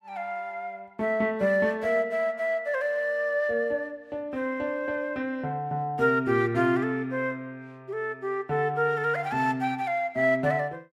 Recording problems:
none

